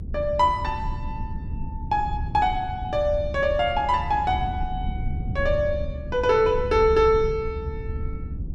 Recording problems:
low-frequency rumble; below 110 Hz, SNR 9 dB

